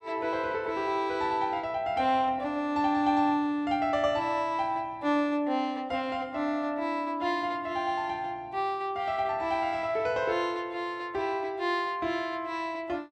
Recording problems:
none

